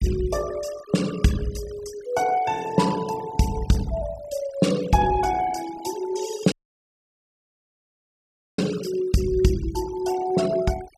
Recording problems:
denoising artefacts; signal-to-artefact ratio 16 dB
audio cutting out; at 6.5 s for 2 s

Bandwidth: 14.5 kHz